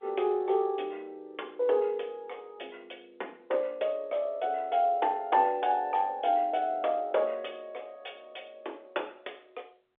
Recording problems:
telephone audio; 320 Hz to 3.6 kHz, G.711

